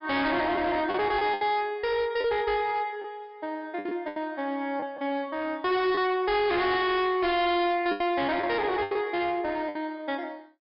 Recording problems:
treble missing; nothing above 5.5 kHz
distortion; hard clipping, uneven, signal-to-distortion ratio 7 dB
lost packets; 6% of the sound replaced, filled with the last packet

